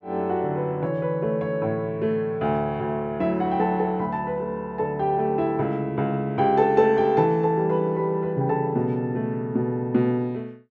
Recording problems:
none

